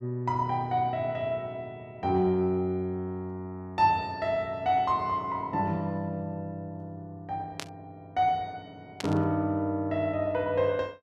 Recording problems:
burst of static; at 7.5 s and at 9 s; peak -2 dB vs average level

